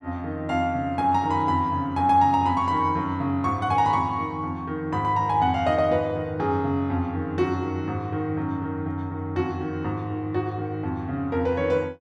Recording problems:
none

